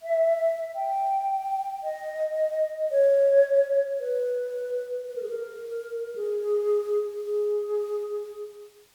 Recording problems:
background hiss; slope 0 dB per octave, SNR 30 dB

